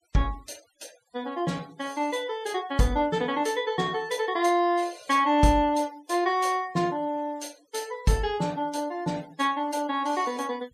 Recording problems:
denoising artefacts; signal-to-artefact ratio 24 dB

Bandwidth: 14 kHz